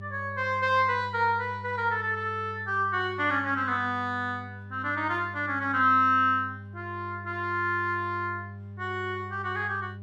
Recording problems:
hum; 50 Hz, harmonics up to 600 Hz, SNR 15 dB

